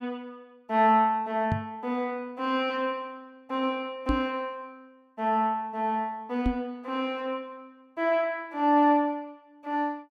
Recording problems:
microphone thump; at 1.5 s, at 4 s and at 6.5 s; peak +3 dB vs average level

